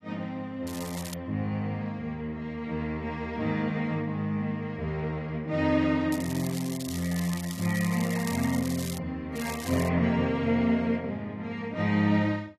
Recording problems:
codec artefacts; AAC, log-spectral distance 3 dB, nothing above 13.7 kHz
crackling; at 0.5 s, from 6 to 9 s and at 9.5 s; loose cable, SNR 12 dB

